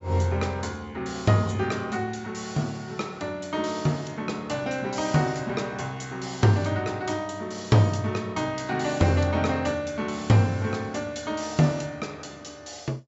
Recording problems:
low-pass filter; nothing above 8 kHz

